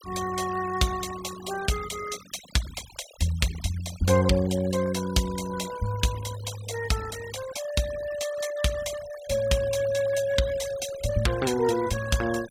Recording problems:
denoising artefacts; signal-to-artefact ratio 15 dB

